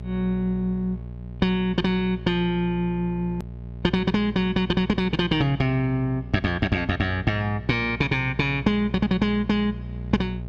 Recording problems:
hum; 60 Hz, harmonics up to 660 Hz, SNR 12 dB
hard cut with a click; at 3.5 s

